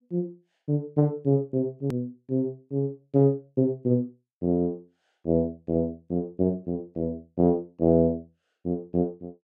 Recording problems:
hard cut with a click; at 2 s

